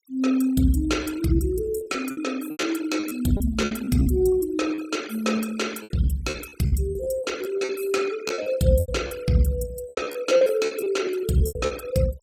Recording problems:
denoising artefacts; signal-to-artefact ratio 17 dB
lost packets; 14% of the sound replaced, filled with repeated pitch periods

